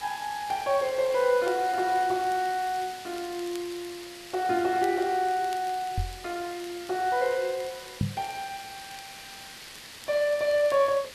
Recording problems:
background hiss; slope +1 dB per octave, SNR 14 dB
crackle; vinyl, SNR 25 dB
microphone thump; at 6 s and at 8 s; peak +3 dB vs average level

